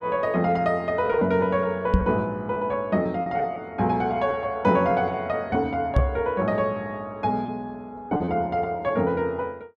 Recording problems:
lost packets; 4% of the sound replaced, filled with repeated pitch periods
microphone bump; at 2 s and at 6 s; peak +7 dB vs average level

